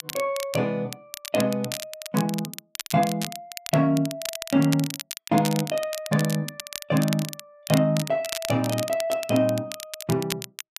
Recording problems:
crackling; vinyl, SNR 9 dB

